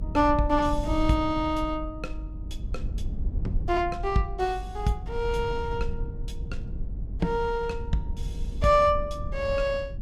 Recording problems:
rumble; below 78 Hz, SNR 8 dB

